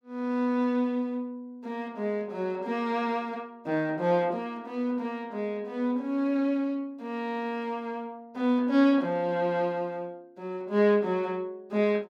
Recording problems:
none

